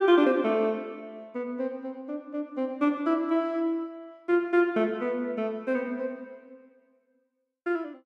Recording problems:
none

